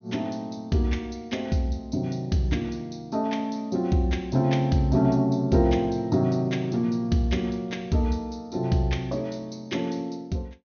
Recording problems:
treble missing; nothing above 6.5 kHz

